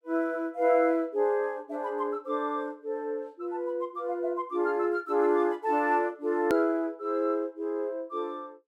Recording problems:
click at an edit; at 6.5 s

